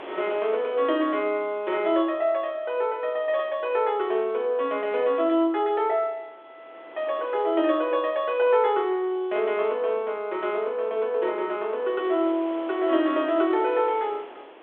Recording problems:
phone line; 280 Hz to 3.6 kHz, G.726
wind on the microphone; below 1.4 kHz, SNR 22 dB

